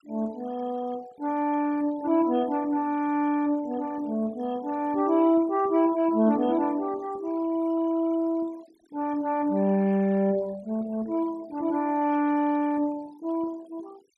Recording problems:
denoising artefacts; signal-to-artefact ratio 23 dB

